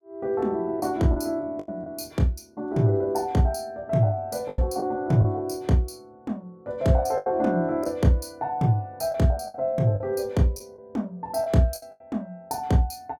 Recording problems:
packet loss; 5% of the sound replaced, filled with the last packet

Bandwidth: 17.5 kHz